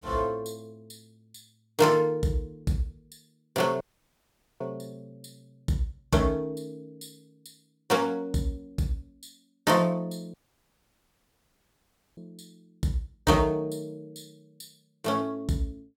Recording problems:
audio cutting out; at 4 s for 1 s and at 10 s for 2 s

